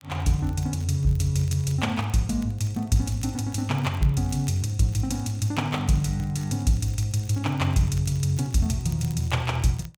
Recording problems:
crackle; vinyl, SNR 26 dB

